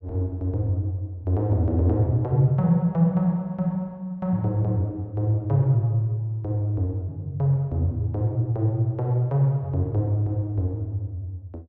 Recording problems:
none

